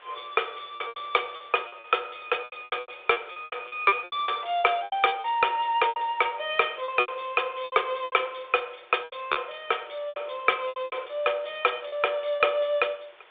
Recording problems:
telephone audio; 320 Hz to 3.6 kHz, G.726
hiss; SNR 25 dB
packet loss; 14% of the sound replaced, filled with repeated pitch periods

